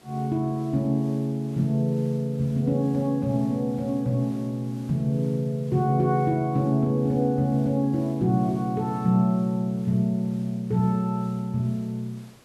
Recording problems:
hiss; slope -4 dB per octave, SNR 27 dB

